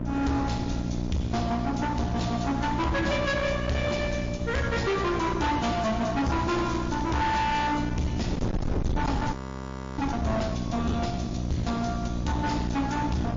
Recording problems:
lossy compression; MP3, log-spectral distance 3 dB, nothing above 6.3 kHz
distortion; hard clipping, uneven, signal-to-distortion ratio 6 dB
hum; 60 Hz, harmonics up to 1 kHz, SNR 4 dB
wind on the microphone; below 300 Hz, SNR 8 dB
crackle; at 6.5 s; loose cable, SNR 24 dB
frozen audio; at 9.5 s for 0.5 s

